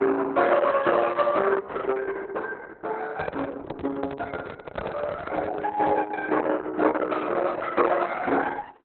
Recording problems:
lossy compression; Opus, log-spectral distance 4 dB, nothing above 4 kHz
microphone handling noise; from 3 to 6 s; peak +2 dB vs average level

